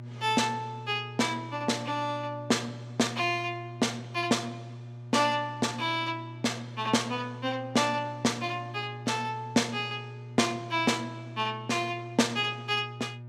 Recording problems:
hum; 60 Hz, harmonics up to 600 Hz, SNR 13 dB

